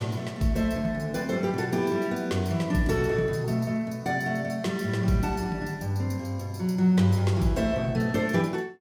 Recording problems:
none

